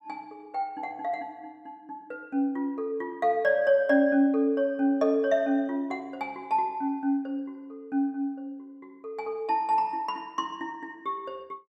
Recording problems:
none

